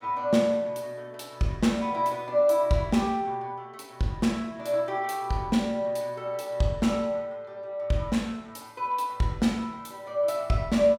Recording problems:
none

